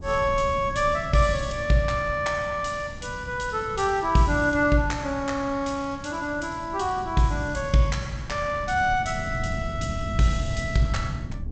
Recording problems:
lossy compression; G.722, log-spectral distance 4 dB, nothing above 7.8 kHz
wind noise; below 160 Hz, SNR 11 dB

